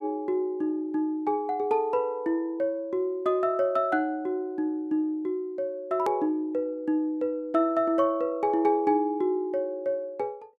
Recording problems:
hard cut with a click; at 6 s

